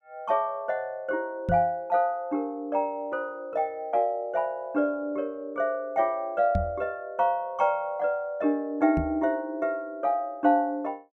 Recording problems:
knock on the microphone; at 1.5 s, at 6.5 s and at 9 s; peak +3 dB vs average level

